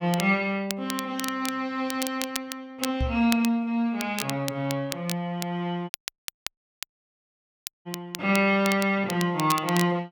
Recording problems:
crackling; vinyl, SNR 10 dB
microphone thump; at 3 s; peak +2 dB vs average level
audio cutting out; at 6 s for 2 s

